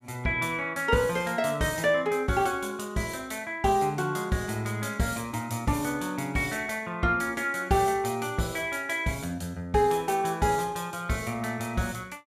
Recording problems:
none

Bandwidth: 15.5 kHz